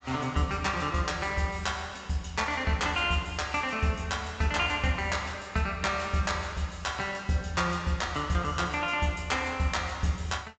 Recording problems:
low-pass filter; nothing above 8 kHz

